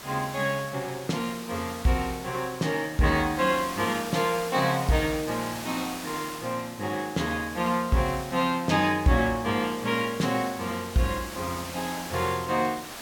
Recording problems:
hiss; slope -2 dB per octave, SNR 12 dB

